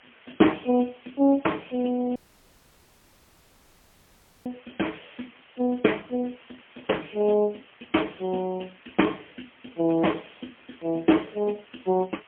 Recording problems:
phone line; 190 Hz to 3.3 kHz, AMR-NB, then MP3
background hiss; SNR 26 dB
audio cutting out; at 2 s for 2.5 s

